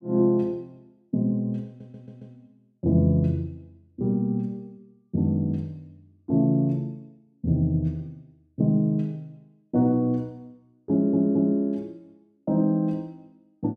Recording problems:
audio stuttering; at 1.5 s and at 11 s

